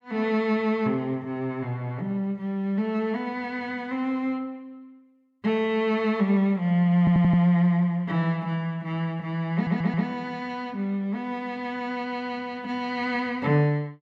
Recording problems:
audio stuttering; at 7 s and at 9.5 s

